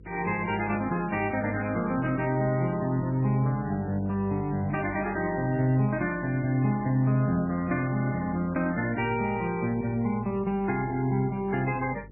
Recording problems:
codec artefacts; MP3, log-spectral distance 2 dB, nothing above 2.4 kHz
hum; 50 Hz, harmonics up to 500 Hz, SNR 21 dB

